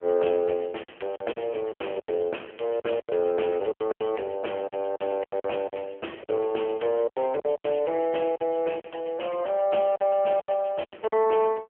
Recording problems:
phone line; 260 Hz to 3.3 kHz, AMR-NB
packet loss; 12% of the sound replaced, filled with silence

